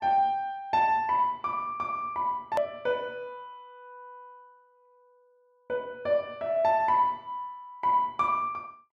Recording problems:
edit click; at 2.5 s

